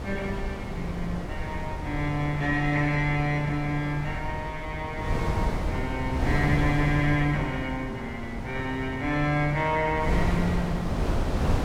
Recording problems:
wind noise; below 340 Hz, SNR 4 dB

